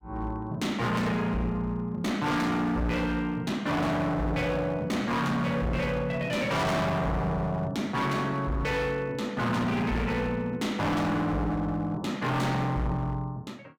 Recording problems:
distortion; hard clipping, signal-to-distortion ratio 6 dB

